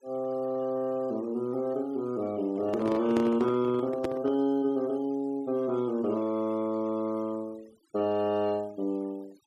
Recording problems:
denoising artefacts; signal-to-artefact ratio 26 dB
handling noise; from 2.5 to 4.5 s; peak +1 dB vs average level

